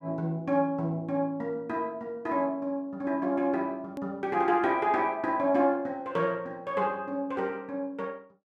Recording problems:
edit click; at 4 s

